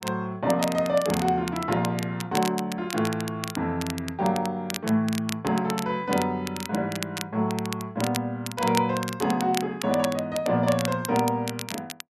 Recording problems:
crackle; vinyl, SNR 10 dB

